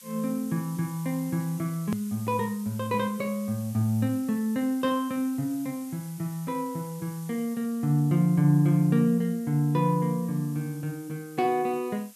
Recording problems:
hiss; SNR 20 dB
edit click; at 2 s

